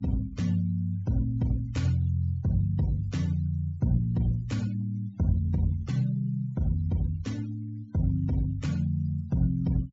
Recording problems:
treble missing; nothing above 8 kHz
noise reduction artefacts; signal-to-artefact ratio 26 dB

